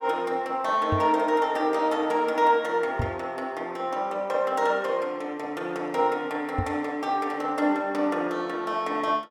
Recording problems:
microphone bump; at 1 s, at 3 s and at 6.5 s; peak +1 dB vs average level

